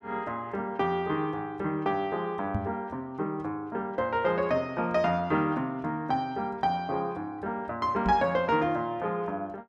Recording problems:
knock on the microphone; at 2.5 s and at 8 s; peak +3 dB vs average level

